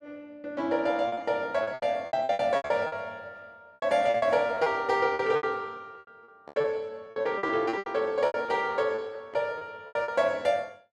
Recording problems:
packet loss; 16% of the sound replaced, filled with repeated pitch periods

